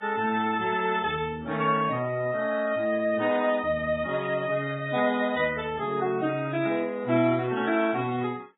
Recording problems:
lossy compression; Vorbis, then AAC, log-spectral distance 3 dB, nothing above 3.8 kHz

